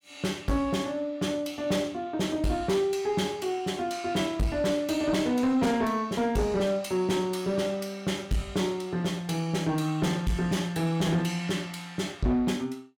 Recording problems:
distortion; soft clipping, signal-to-distortion ratio 11 dB

